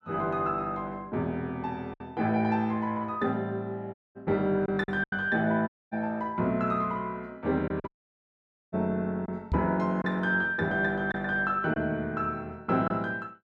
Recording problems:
packet loss; 3% of the sound replaced, filled with silence
dropout; at 4 s, at 5.5 s and at 8 s for 1 s
microphone thump; at 9.5 s; peak +3 dB vs average level

